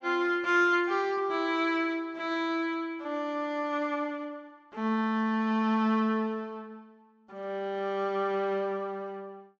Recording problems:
treble cut off; nothing above 8 kHz

